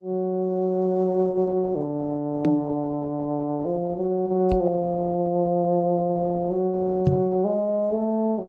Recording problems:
codec artefacts; Opus, then AAC, log-spectral distance 2 dB
microphone thump; at 2.5 s, at 4.5 s and at 7 s; peak +8 dB vs average level

